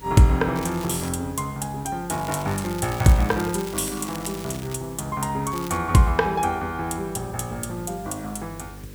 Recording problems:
hum; 50 Hz, harmonics up to 550 Hz, SNR 19 dB
background hiss; SNR 23 dB
crackle; at 0.5 s, from 2 to 5 s and at 5.5 s; loose cable, SNR 15 dB

